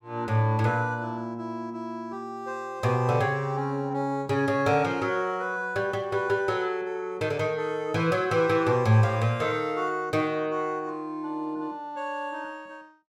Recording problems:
none

